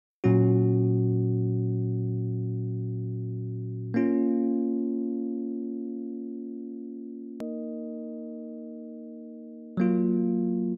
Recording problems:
hard cut with a click; at 7.5 s

